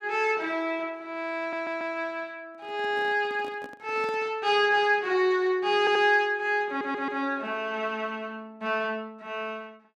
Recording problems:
stutter; at 1.5 s, at 6 s and at 6.5 s
microphone handling noise; from 2.5 to 4.5 s; peak -12 dB vs average level

